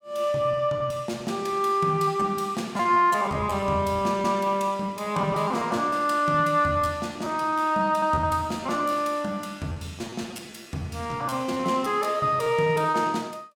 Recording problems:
packet loss; 11% of the sound replaced, filled with repeated pitch periods

